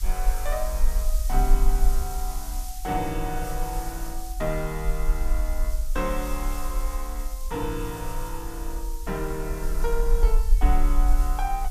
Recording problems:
background hiss; slope +5 dB per octave, SNR 9 dB
low-frequency rumble; below 42 Hz, SNR -3 dB

